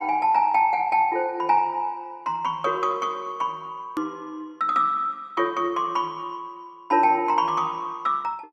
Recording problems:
edit click; at 4 s

